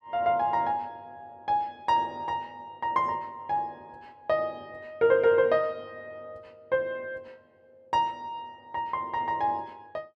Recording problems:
none

